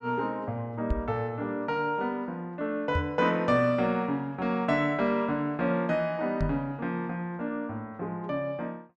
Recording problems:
microphone bump; at 1 s, at 3 s and at 6.5 s; peak +4 dB vs average level

